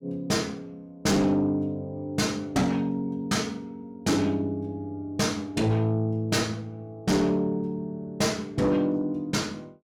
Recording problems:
distorted audio; soft clipping, signal-to-distortion ratio 11 dB

